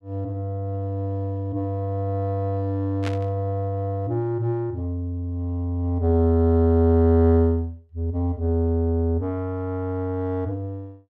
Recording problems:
burst of static; at 3 s; peak -5 dB vs average level

